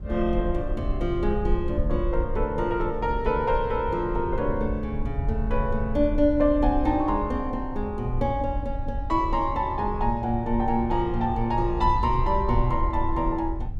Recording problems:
rumble; below 66 Hz, SNR 6 dB

